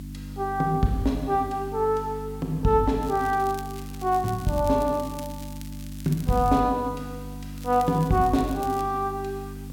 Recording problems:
hum; 50 Hz, harmonics up to 300 Hz, SNR 13 dB
hiss; slope 0 dB per octave, SNR 27 dB
crackle; from 3 to 6.5 s and from 7.5 to 9 s; loose cable, SNR 20 dB

